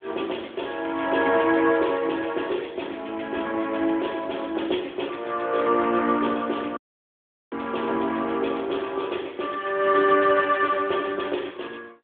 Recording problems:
phone line; 240 Hz to 3.5 kHz, AMR-NB
dropout; at 7 s for 1 s

